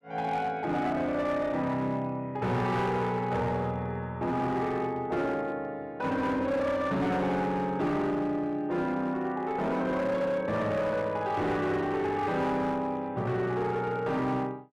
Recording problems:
distortion; hard clipping, signal-to-distortion ratio 11 dB

